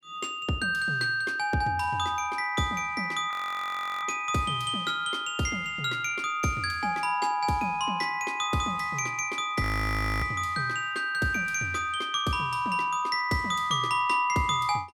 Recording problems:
audio freezing; at 3.5 s for 0.5 s and at 9.5 s for 0.5 s

